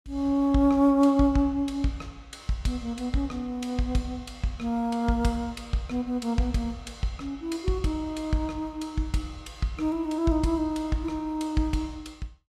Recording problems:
none

